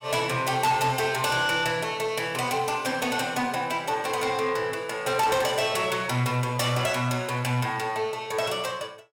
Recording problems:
distorted audio; soft clipping, signal-to-distortion ratio 12 dB

